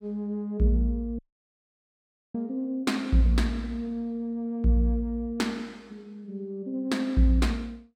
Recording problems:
audio cutting out; at 1 s for 1 s

